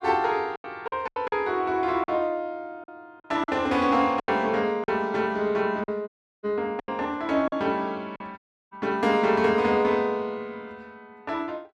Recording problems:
lost packets; 7% of the sound replaced, filled with silence
audio cutting out; at 6 s and at 8.5 s

